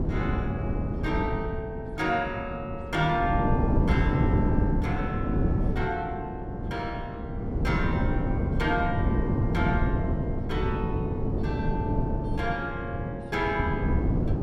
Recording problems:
wind on the microphone; below 250 Hz, SNR -3 dB

